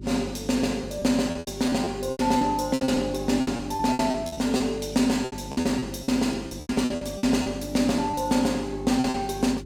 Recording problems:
hum; 50 Hz, harmonics up to 400 Hz, SNR 14 dB
lost packets; 15% of the sound replaced, filled with repeated pitch periods

